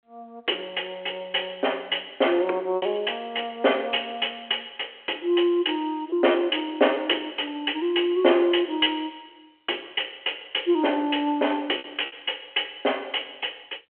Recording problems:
phone line; 300 Hz to 3.3 kHz, G.726
lost packets; 2% of the sound replaced, filled with repeated pitch periods

